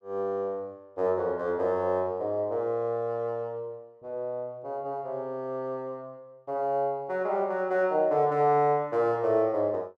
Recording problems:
none

